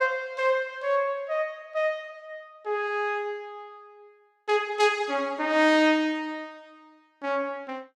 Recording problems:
none

